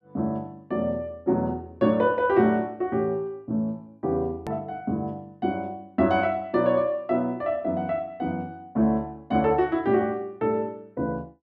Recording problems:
hard cut with a click; at 4.5 s

